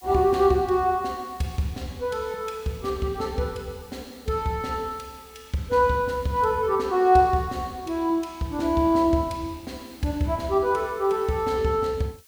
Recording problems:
hiss; slope +3 dB per octave, SNR 27 dB

